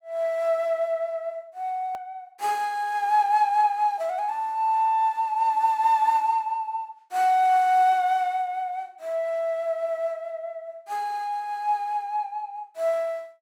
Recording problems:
hard cut with a click; at 2 s

